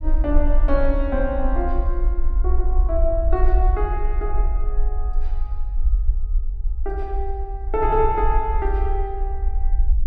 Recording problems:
low-frequency rumble; below 52 Hz, strongest tone 22 Hz, SNR -2 dB

